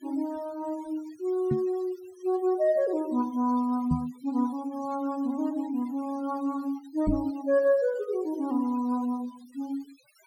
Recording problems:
noise reduction artefacts; signal-to-artefact ratio 23 dB
microphone bump; at 1.5 s, at 4 s and at 7 s; peak +5 dB vs average level

